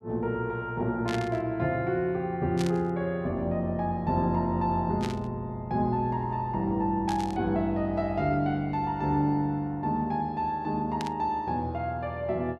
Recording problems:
burst of static; 5 times, first at 1 s; peak -4 dB vs average level

